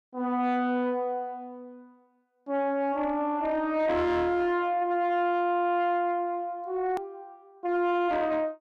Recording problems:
distortion; soft clipping, signal-to-distortion ratio 10 dB
edit click; at 7 s

